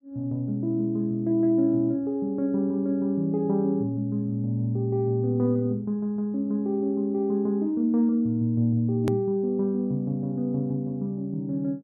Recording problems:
hard cut with a click; at 9 s

